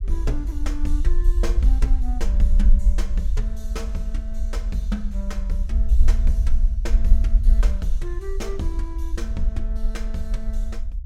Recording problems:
low-frequency rumble; below 50 Hz, SNR -10 dB

